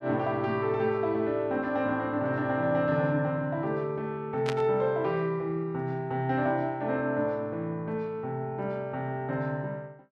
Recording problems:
static burst; at 4.5 s; peak 0 dB vs average level

